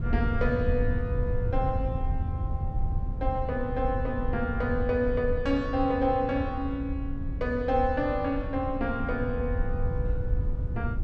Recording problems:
low-frequency rumble; below 100 Hz, SNR 3 dB

